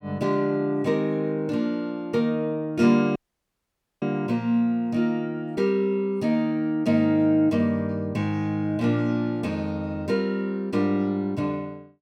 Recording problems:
dropout; at 3 s for 1 s

